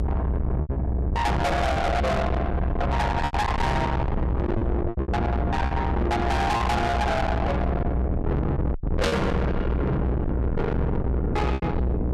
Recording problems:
distortion; soft clipping, signal-to-distortion ratio 6 dB
mains hum; 60 Hz, harmonics up to 900 Hz, SNR 3 dB
low-frequency rumble; below 630 Hz, SNR 1 dB
lost packets; 7% of the sound replaced, filled with repeated pitch periods
burst of static; at 9 s; peak 0 dB vs average level

